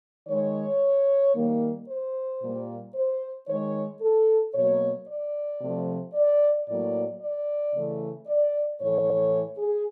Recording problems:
stutter; at 9 s

